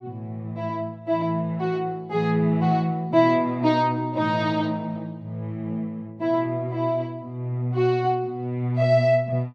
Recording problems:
none

